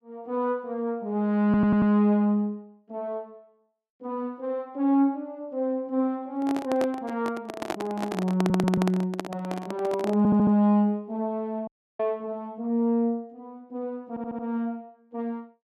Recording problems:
audio stuttering; 4 times, first at 1.5 s
handling noise; from 6.5 to 11 s; peak 0 dB vs average level
audio cutting out; at 12 s

